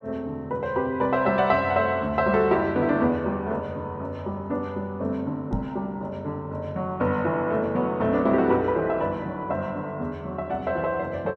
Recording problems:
knock on the microphone; at 5.5 s; peak +1 dB vs average level

